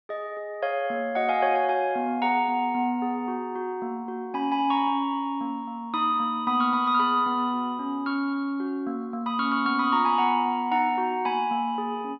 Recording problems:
low-pass filter; nothing above 5.5 kHz

